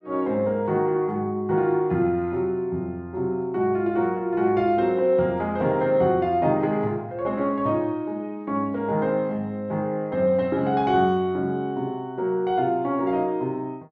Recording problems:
none

